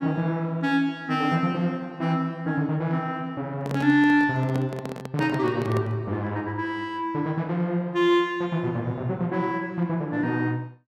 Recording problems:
microphone handling noise; from 3.5 to 6 s; peak -4 dB vs average level

